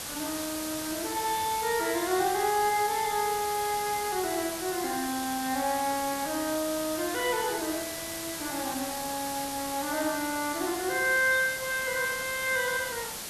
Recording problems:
hiss; slope -1 dB per octave, SNR 5 dB

